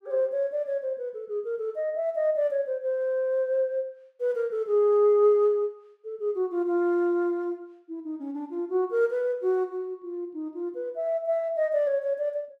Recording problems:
none

